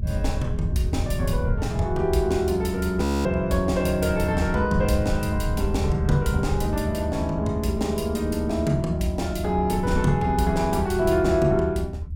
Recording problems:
rumble; below 100 Hz, SNR 5 dB
frozen audio; at 3 s

